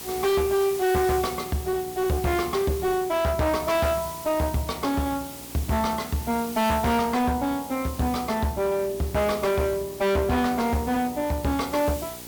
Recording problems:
distorted audio; hard clipping, uneven, signal-to-distortion ratio 7 dB
mains hum; 60 Hz, harmonics up to 1.4 kHz, SNR 22 dB
background hiss; slope 0 dB per octave, SNR 13 dB

